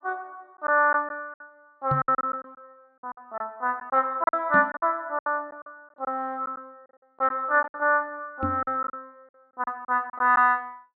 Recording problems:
treble missing; nothing above 4.5 kHz
lost packets; 11% of the sound replaced, filled with silence
microphone thump; at 2 s, at 4.5 s and at 8.5 s; peak 0 dB vs average level

